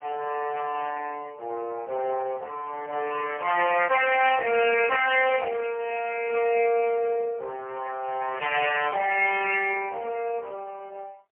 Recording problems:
telephone audio; 300 Hz to 3 kHz, AMR-NB, then MP3

